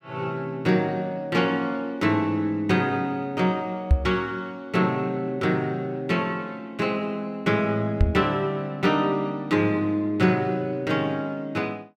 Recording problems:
microphone bump; at 4 s and at 8 s; peak +9 dB vs average level

